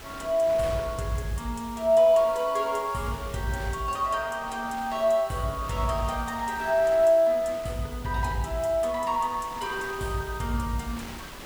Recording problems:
hiss; slope +2 dB per octave, SNR 21 dB
wind on the microphone; below 2.5 kHz, SNR 19 dB

